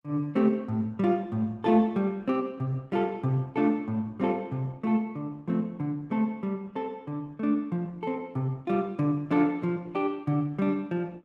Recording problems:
lossy codec; Opus, log-spectral distance 2 dB

